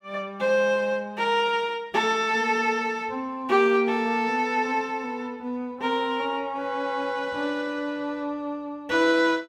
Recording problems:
none

